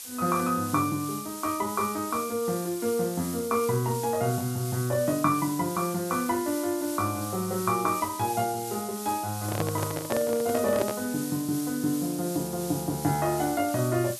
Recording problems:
background hiss; slope +2 dB per octave, SNR 9 dB
microphone handling noise; from 9.5 to 11 s; peak +2 dB vs average level

